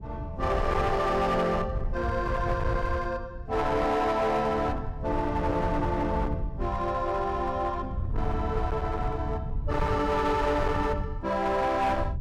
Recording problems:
distortion; hard clipping, signal-to-distortion ratio 11 dB
wind on the microphone; below 120 Hz, SNR 6 dB

